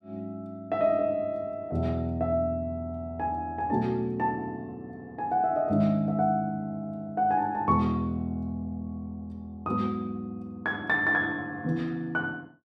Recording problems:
none

